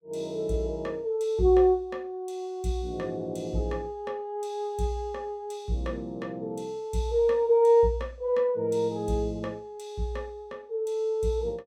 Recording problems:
none

